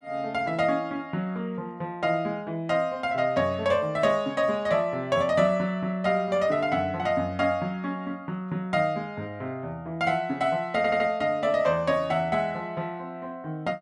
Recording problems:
stutter; at 11 s

